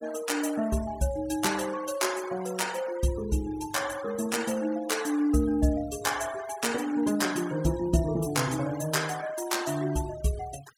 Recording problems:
noise reduction artefacts; signal-to-artefact ratio 15 dB

